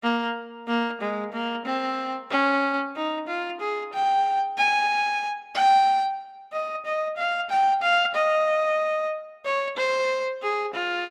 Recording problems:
none

